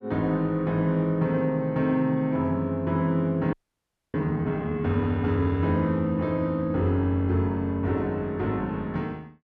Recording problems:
audio freezing; at 3.5 s for 0.5 s

